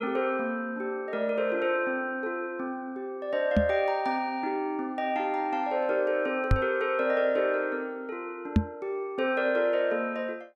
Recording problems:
microphone thump; at 3.5 s, at 6.5 s and at 8.5 s; peak +10 dB vs average level

